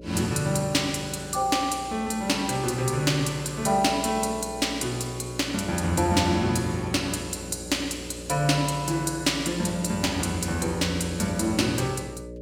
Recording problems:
electrical hum; 60 Hz, harmonics up to 600 Hz, SNR 14 dB

